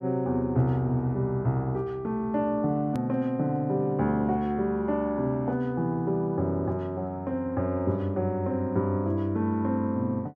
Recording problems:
click at an edit; at 3 s

